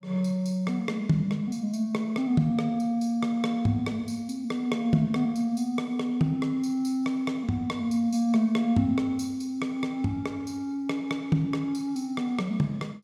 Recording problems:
none

